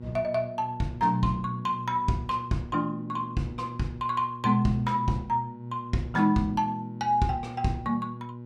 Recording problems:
hum; 60 Hz, harmonics up to 840 Hz, SNR 13 dB

